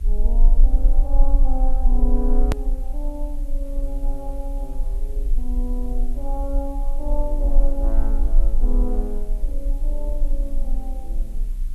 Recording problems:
hum; 60 Hz, harmonics up to 600 Hz, SNR 19 dB
hiss; slope -1 dB per octave, SNR 21 dB
low-frequency rumble; below 36 Hz, strongest tone 18 Hz, SNR -9 dB
click at an edit; at 2.5 s

